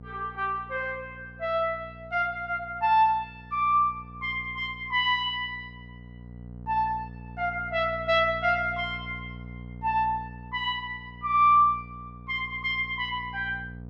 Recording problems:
electrical hum; 60 Hz, harmonics up to 720 Hz, SNR 17 dB

